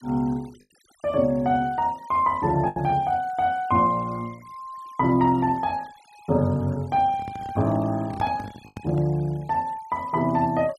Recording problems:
denoising artefacts; signal-to-artefact ratio 27 dB
packet loss; 0.8% of the sound replaced, filled with the last packet
microphone handling noise; from 7 to 9 s; peak -4 dB vs average level

